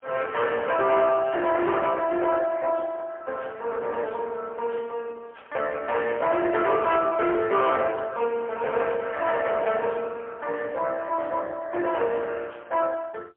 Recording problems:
phone line; 390 Hz to 3.4 kHz, AMR-NB, then MP3
distortion; soft clipping, signal-to-distortion ratio 13 dB

